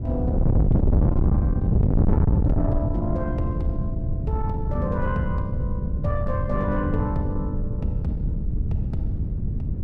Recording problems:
distorted audio; soft clipping, signal-to-distortion ratio 8 dB
wind on the microphone; below 150 Hz, SNR -5 dB

